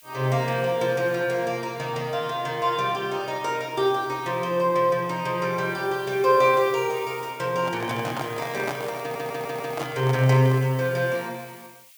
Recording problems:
background hiss; SNR 22 dB
handling noise; from 7.5 to 11 s; peak -2 dB vs average level
audio stuttering; at 9 s

